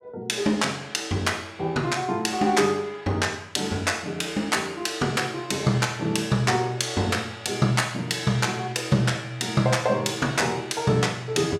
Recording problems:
none

